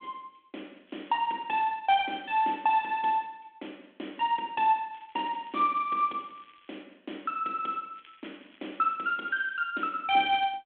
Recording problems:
telephone audio; 240 Hz to 3.5 kHz, G.726
crackle; at 1 s, from 5 to 7 s and from 8 to 9.5 s; loose cable, SNR 30 dB

